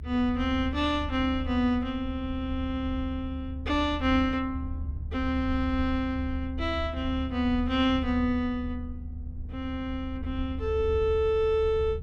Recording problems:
low-frequency rumble; below 76 Hz, strongest tone 74 Hz, SNR 8 dB

